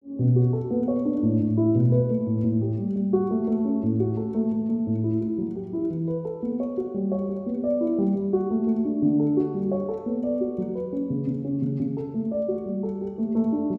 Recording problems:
none

